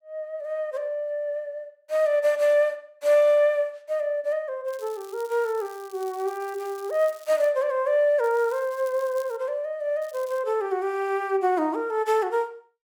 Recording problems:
crackling; from 4.5 to 7.5 s, from 8 to 9.5 s and at 10 s; loose cable, SNR 24 dB

